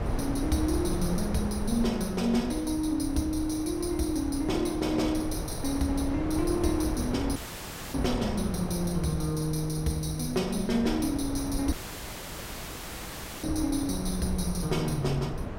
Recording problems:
wind noise; below 400 Hz, SNR 6 dB
audio cutting out; at 7.5 s for 0.5 s and at 12 s for 1.5 s

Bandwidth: 16 kHz